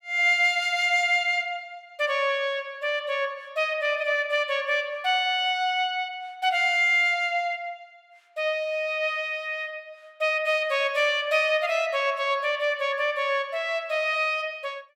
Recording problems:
none

